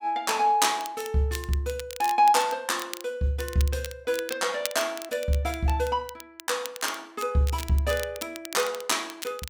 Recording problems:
crackling; vinyl, SNR 14 dB

